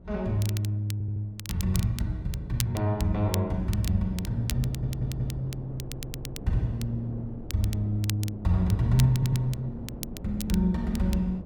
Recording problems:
wind noise; below 300 Hz, SNR 13 dB
crackling; vinyl, SNR 13 dB
audio stuttering; 4 times, first at 1 s

